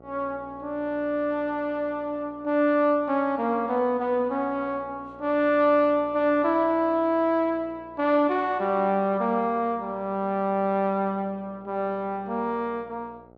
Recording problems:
mains hum; 60 Hz, harmonics up to 1.4 kHz, SNR 25 dB

